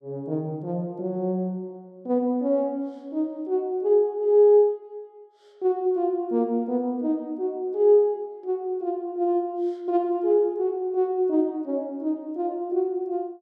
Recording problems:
none

